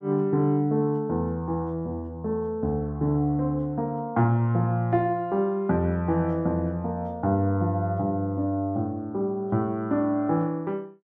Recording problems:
none

